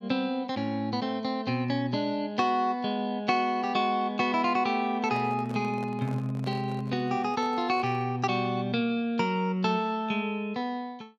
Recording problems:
microphone handling noise; from 5 to 8 s; peak -10 dB vs average level

